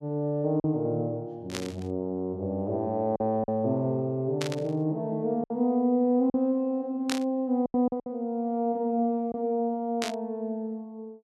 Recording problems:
lost packets; 4% of the sound replaced, filled with silence
static burst; 4 times, first at 1.5 s; peak +1 dB vs average level

